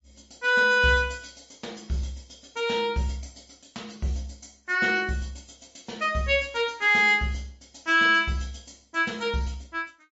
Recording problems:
treble missing; nothing above 7.6 kHz
codec artefacts; MP3, log-spectral distance 5 dB

